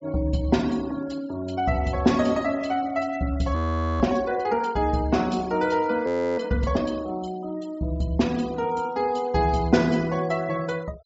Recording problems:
low-pass filter; nothing above 8 kHz
noise reduction artefacts; signal-to-artefact ratio 22 dB
audio freezing; at 3.5 s and at 6 s

